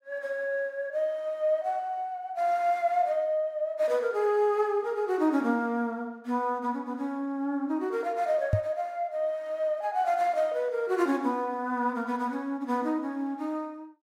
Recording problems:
knock on the microphone; at 8.5 s; peak +7 dB vs average level

